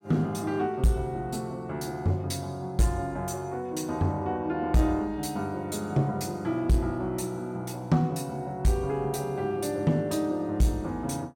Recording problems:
distorted audio; soft clipping, signal-to-distortion ratio 12 dB

